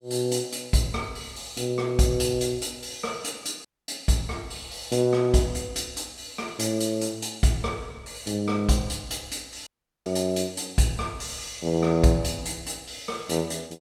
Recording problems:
dropout; at 3.5 s and at 9.5 s

